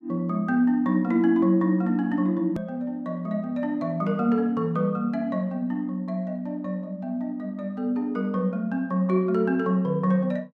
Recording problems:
edit click; at 2.5 s

